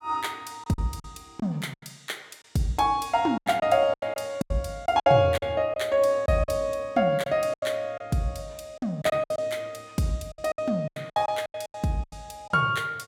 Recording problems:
packet loss; 12% of the sound replaced, filled with silence

